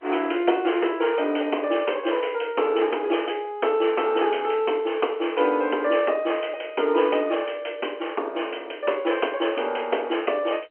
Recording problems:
telephone audio; 260 Hz to 3.2 kHz, G.711

